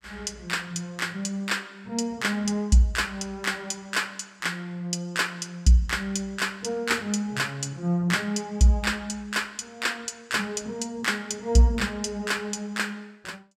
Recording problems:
none

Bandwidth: 15.5 kHz